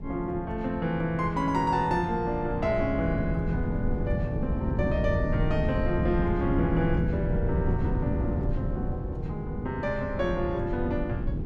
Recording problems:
wind on the microphone; below 170 Hz, SNR 2 dB

